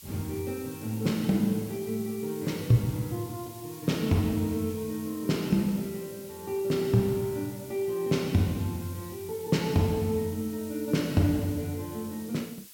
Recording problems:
background hiss; SNR 17 dB

